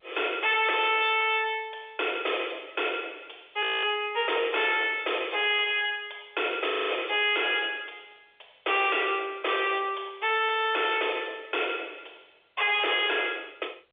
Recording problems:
phone line; 370 Hz to 3.6 kHz, G.711
distortion; hard clipping, signal-to-distortion ratio 6 dB
audio freezing; at 3.5 s and at 6.5 s

